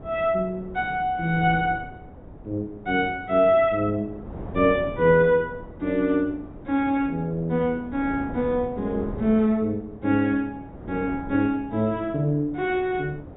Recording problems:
low-pass filter; nothing above 3.8 kHz
wind noise; below 430 Hz, SNR 16 dB

